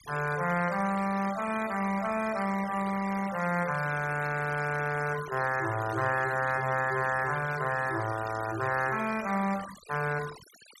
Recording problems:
denoising artefacts; signal-to-artefact ratio 13 dB

